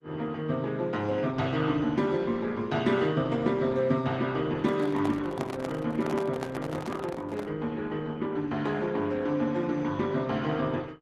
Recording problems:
lossy codec; Opus, log-spectral distance 3 dB, nothing above 11.6 kHz
handling noise; from 4.5 to 7.5 s; peak -2 dB vs average level

